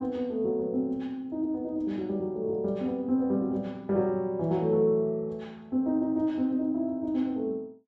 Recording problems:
none

